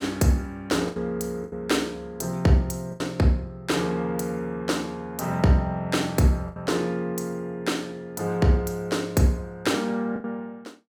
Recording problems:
packet loss; 4% of the sound replaced, filled with the last packet

